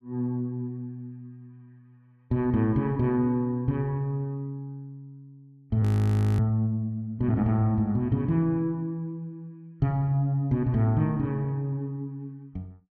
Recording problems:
audio freezing; at 6 s for 0.5 s

